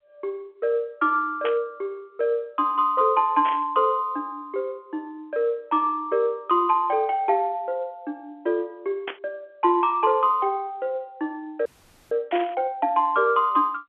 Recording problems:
telephone audio; 240 Hz to 3.4 kHz, G.711
burst of static; 4 times, first at 1.5 s; peak -3 dB vs average level
audio freezing; at 12 s

